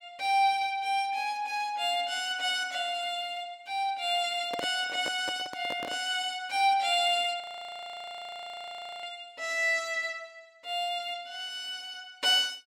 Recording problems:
microphone handling noise; from 4.5 to 6 s; peak -3 dB vs average level
audio freezing; at 7.5 s for 1.5 s

